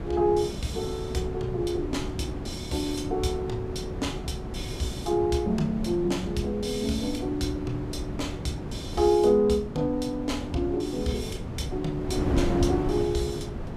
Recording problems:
wind noise; below 330 Hz, SNR 6 dB

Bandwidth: 15 kHz